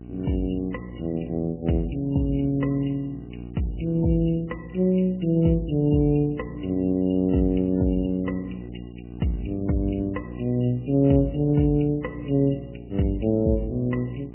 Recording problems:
codec artefacts; MP3, log-spectral distance 3 dB, nothing above 2.9 kHz
electrical hum; 60 Hz, harmonics up to 780 Hz, SNR 15 dB

